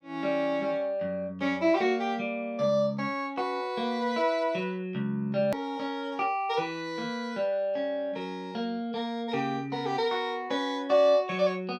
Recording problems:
edit click; at 5.5 s

